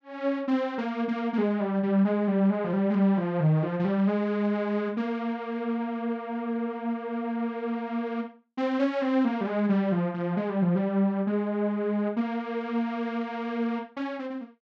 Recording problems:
none

